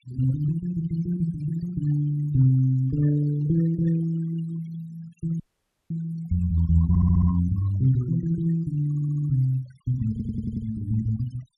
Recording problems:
noise reduction artefacts; signal-to-artefact ratio 21 dB
dropout; at 5.5 s for 0.5 s
stutter; at 7 s, at 9 s and at 10 s

